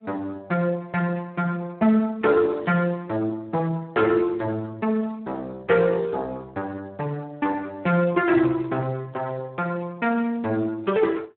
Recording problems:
telephone audio; 190 Hz to 3.1 kHz, Speex

